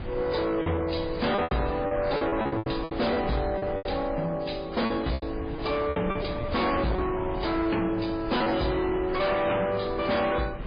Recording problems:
codec artefacts; MP3, then AAC, log-spectral distance 4 dB, nothing above 4.1 kHz
distorted audio; soft clipping, signal-to-distortion ratio 7 dB
wind noise; below 490 Hz, SNR 11 dB
packet loss; 10% of the sound replaced, filled with repeated pitch periods

